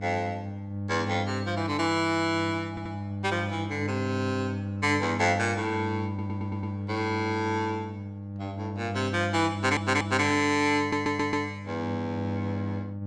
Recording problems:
electrical hum; 50 Hz, harmonics up to 800 Hz, SNR 6 dB
audio stuttering; 4 times, first at 2.5 s

